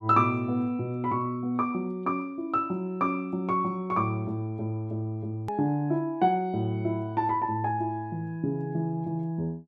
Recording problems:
click at an edit; at 5.5 s

